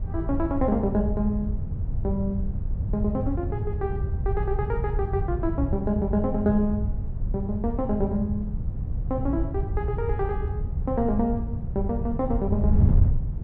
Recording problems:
wind on the microphone; below 110 Hz, SNR 0 dB

